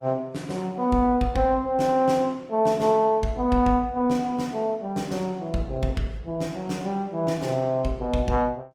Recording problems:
codec artefacts; Opus, log-spectral distance 2 dB, nothing above 19 kHz

